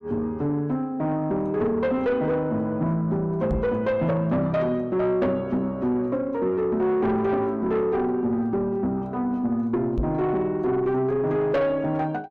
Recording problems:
distorted audio; soft clipping, signal-to-distortion ratio 11 dB
knock on the microphone; at 3.5 s and at 10 s; peak +2 dB vs average level

